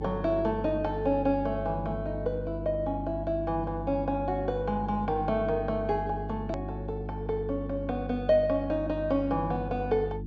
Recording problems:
treble cut off; nothing above 8 kHz
hum; 50 Hz, harmonics up to 350 Hz, SNR 8 dB
hard cut with a click; at 6.5 s

